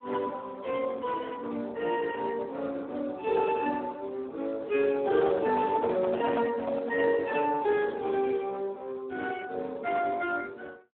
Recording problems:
telephone audio; 220 Hz to 2.8 kHz, Speex
microphone handling noise; from 5 to 7 s; peak -2 dB vs average level

